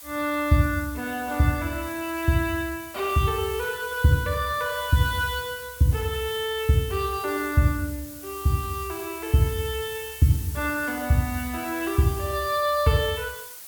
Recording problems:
hiss; slope +1 dB per octave, SNR 14 dB

